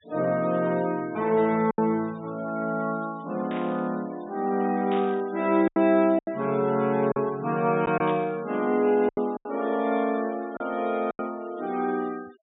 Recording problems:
low-pass filter; nothing above 4 kHz
noise reduction artefacts; signal-to-artefact ratio 25 dB
packet loss; 5% of the sound replaced, filled with silence
static burst; at 3.5 s, at 5 s and at 8 s; peak -10 dB vs average level

